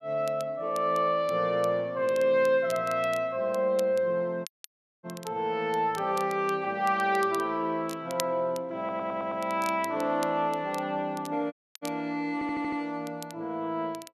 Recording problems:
crackling; vinyl, SNR 19 dB
audio cutting out; at 4.5 s for 0.5 s and at 12 s
audio stuttering; at 9 s and at 12 s

